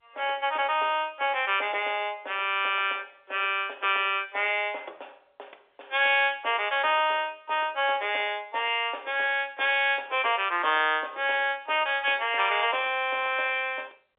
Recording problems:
telephone audio; 340 Hz to 3.6 kHz, G.711

